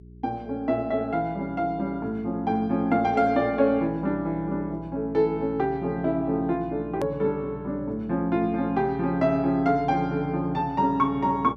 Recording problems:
hum; 60 Hz, harmonics up to 420 Hz, SNR 19 dB
hard cut with a click; at 7 s

